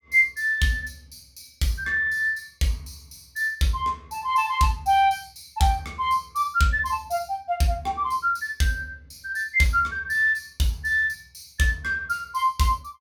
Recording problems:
none

